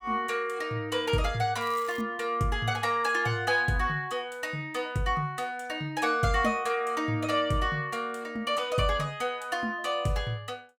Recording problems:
crackling; at 1.5 s; loose cable, SNR 21 dB

